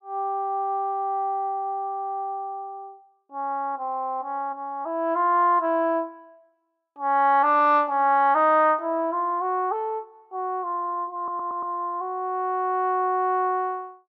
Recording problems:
stutter; at 11 s

